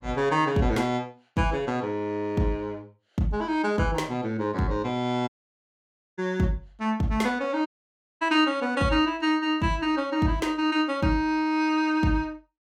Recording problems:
audio cutting out; at 5.5 s for 1 s and at 7.5 s for 0.5 s

